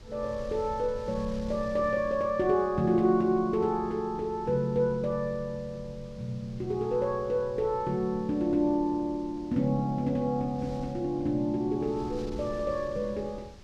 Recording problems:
wind on the microphone; below 140 Hz, SNR 19 dB

